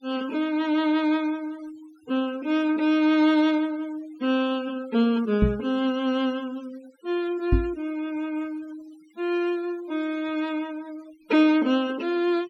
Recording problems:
denoising artefacts; signal-to-artefact ratio 23 dB
knock on the microphone; at 5.5 s and at 7.5 s; peak +6 dB vs average level

